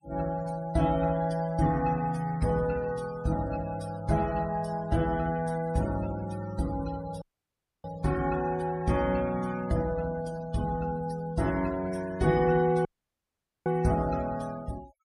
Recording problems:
noise reduction artefacts; signal-to-artefact ratio 19 dB
audio cutting out; at 7 s for 0.5 s and at 13 s for 1 s

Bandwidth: 15.5 kHz